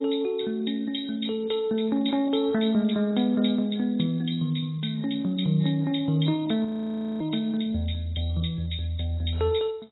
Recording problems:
lossy codec; AAC, log-spectral distance 8 dB, nothing above 3.8 kHz
frozen audio; at 6.5 s for 0.5 s

